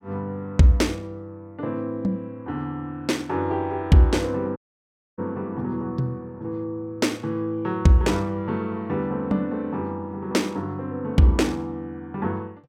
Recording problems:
audio cutting out; at 4.5 s for 0.5 s

